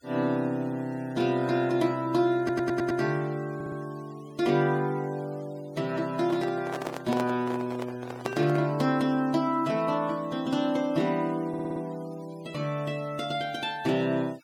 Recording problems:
denoising artefacts; signal-to-artefact ratio 23 dB
audio stuttering; at 2.5 s, at 3.5 s and at 11 s
microphone handling noise; from 6 to 8.5 s; peak 0 dB vs average level

